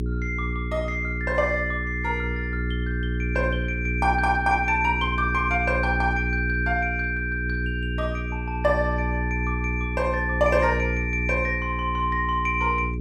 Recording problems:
hum; 60 Hz, harmonics up to 420 Hz, SNR 4 dB

